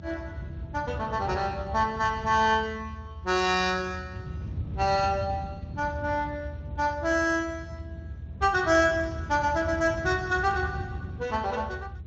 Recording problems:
lossy codec; Speex, log-spectral distance 3 dB
low-frequency rumble; below 140 Hz, SNR 10 dB

